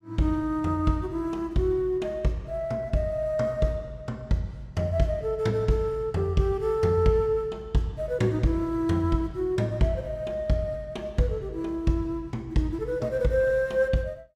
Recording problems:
none

